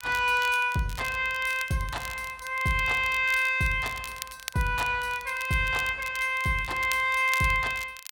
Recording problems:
crackling; vinyl, SNR 16 dB

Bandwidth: 16.5 kHz